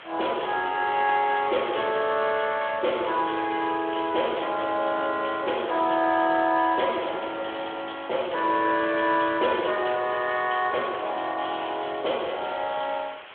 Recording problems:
telephone audio; 280 Hz to 3.4 kHz, Speex
hiss; SNR 17 dB

